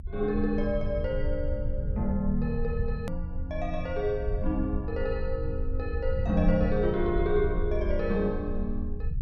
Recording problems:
low-frequency rumble; below 76 Hz, strongest tone 22 Hz, SNR 3 dB
click at an edit; at 3 s

